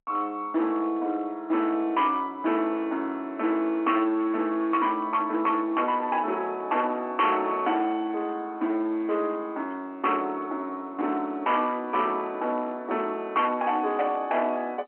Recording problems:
phone line; 240 Hz to 3.4 kHz, G.711
distortion; hard clipping, uneven, signal-to-distortion ratio 10 dB

